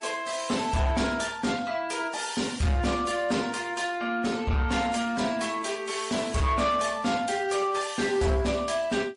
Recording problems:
lossy compression; MP3, then MP3, log-spectral distance 4 dB, nothing above 10.4 kHz
distortion; soft clipping, signal-to-distortion ratio 10 dB

